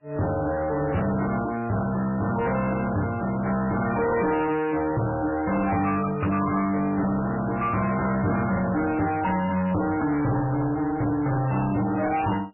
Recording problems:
lossy compression; MP3, then MP3, log-spectral distance 4 dB, nothing above 2.5 kHz
distorted audio; soft clipping, signal-to-distortion ratio 8 dB

